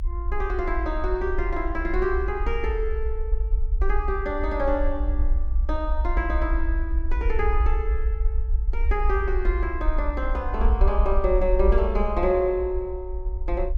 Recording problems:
low-frequency rumble; below 56 Hz, SNR 0 dB

